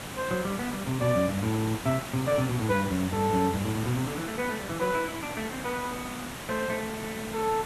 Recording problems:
background hiss; slope -4 dB per octave, SNR 8 dB

